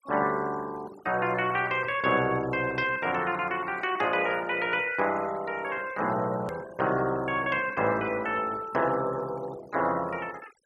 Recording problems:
noise reduction artefacts; signal-to-artefact ratio 18 dB
edit click; at 6.5 s

